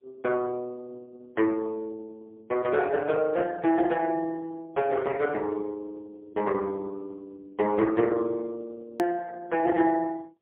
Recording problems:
telephone audio; 240 Hz to 3.4 kHz, AMR-NB, then MP3
edit click; at 9 s

